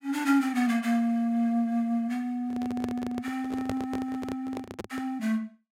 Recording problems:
microphone handling noise; from 2.5 to 5 s; peak -2 dB vs average level

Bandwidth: 16 kHz